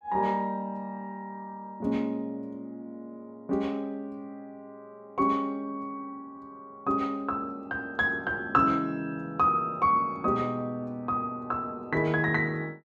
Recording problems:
none

